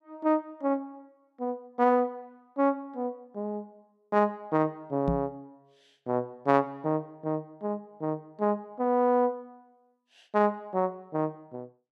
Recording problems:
microphone bump; at 5 s; peak +3 dB vs average level

